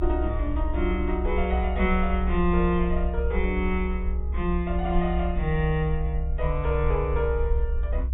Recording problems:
treble missing; nothing above 4 kHz
rumble; below 62 Hz, SNR 1 dB

